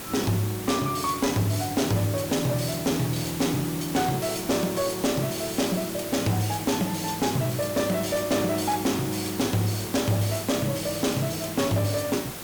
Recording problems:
distortion; soft clipping, signal-to-distortion ratio 12 dB
background hiss; slope -3 dB per octave, SNR 8 dB

